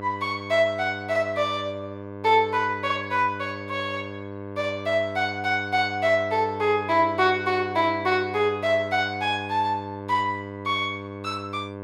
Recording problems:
hum; 50 Hz, harmonics up to 2.1 kHz, SNR 12 dB

